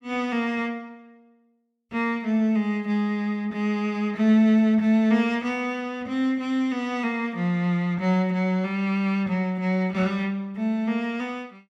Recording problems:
none

